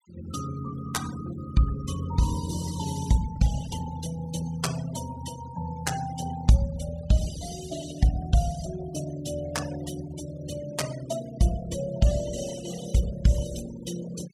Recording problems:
denoising artefacts; signal-to-artefact ratio 13 dB

